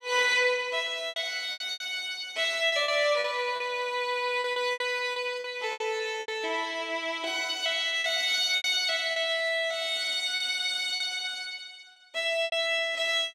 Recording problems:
packet loss; 9% of the sound replaced, filled with repeated pitch periods

